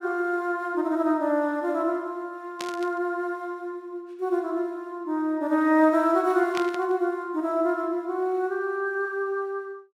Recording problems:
static burst; at 2.5 s and at 6.5 s; peak -3 dB vs average level

